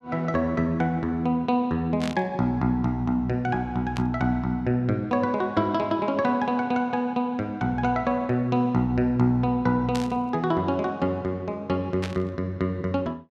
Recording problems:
static burst; 4 times, first at 2 s; peak -5 dB vs average level

